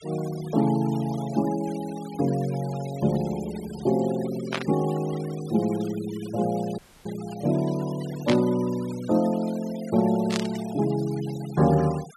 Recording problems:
noise reduction artefacts; signal-to-artefact ratio 17 dB
burst of static; at 4.5 s, at 8.5 s and at 10 s; peak +2 dB vs average level
dropout; at 7 s

